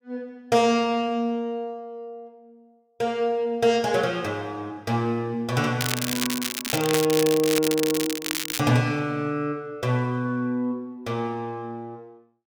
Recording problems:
crackle; from 6 to 8.5 s; loose cable, SNR 3 dB

